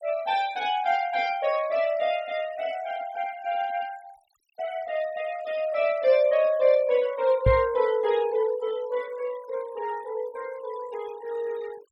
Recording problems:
denoising artefacts; signal-to-artefact ratio 21 dB
microphone thump; at 7.5 s; peak +6 dB vs average level

